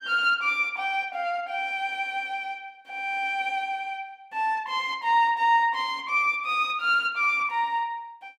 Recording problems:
none

